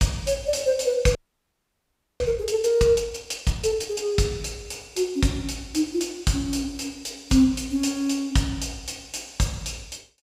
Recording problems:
audio freezing; at 1 s for 1 s

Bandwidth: 15.5 kHz